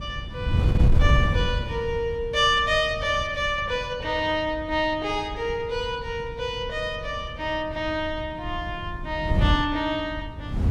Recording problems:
wind noise; below 120 Hz, SNR 4 dB

